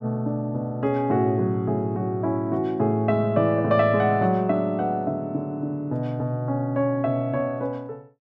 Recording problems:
none

